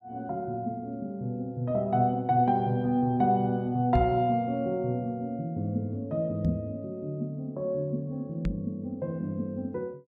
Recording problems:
microphone thump; at 4 s, at 6.5 s and at 8.5 s; peak +5 dB vs average level

